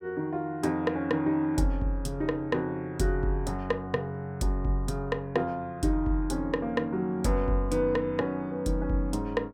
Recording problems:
none

